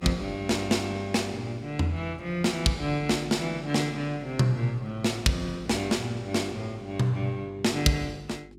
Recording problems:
hum; 50 Hz, harmonics up to 400 Hz, SNR 23 dB

